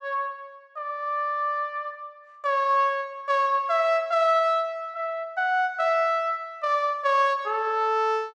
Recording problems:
none

